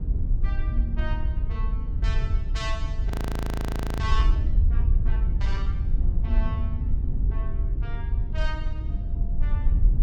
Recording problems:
wind on the microphone; below 66 Hz, SNR -12 dB
audio freezing; at 3 s for 1 s

